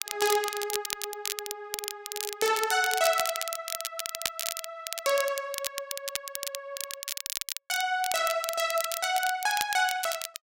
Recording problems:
crackling; vinyl, SNR 5 dB

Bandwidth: 16 kHz